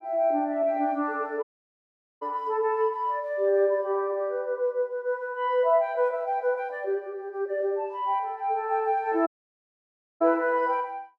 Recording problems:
dropout; at 1.5 s for 1 s and at 9.5 s for 1 s

